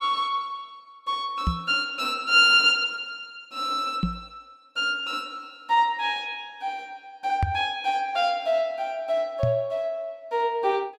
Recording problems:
knock on the microphone; 4 times, first at 1.5 s; peak +3 dB vs average level

